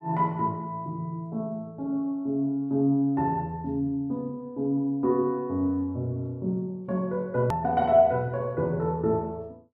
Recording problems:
hard cut with a click; at 7.5 s

